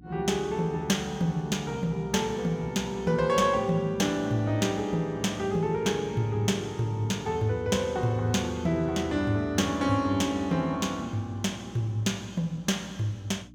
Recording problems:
electrical hum; 60 Hz, harmonics up to 300 Hz, SNR 23 dB

